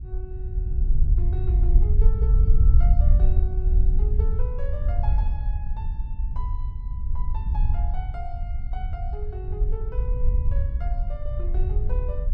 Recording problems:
wind on the microphone; below 62 Hz, SNR -16 dB

